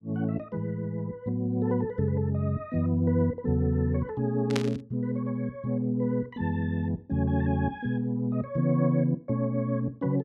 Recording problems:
static burst; at 4.5 s; peak +1 dB vs average level

